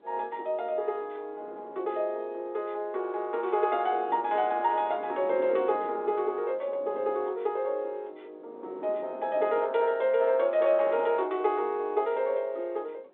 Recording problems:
phone line; 320 Hz to 3.8 kHz, G.726
wind on the microphone; below 590 Hz, SNR 18 dB

